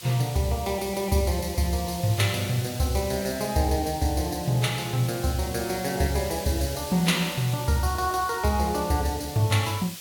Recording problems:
background hiss; slope +2 dB per octave, SNR 12 dB

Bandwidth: 17.5 kHz